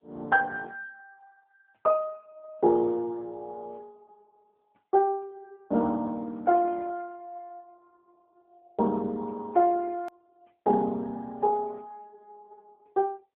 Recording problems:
phone line; 220 Hz to 3.2 kHz, AMR-NB
hard cut with a click; at 10 s

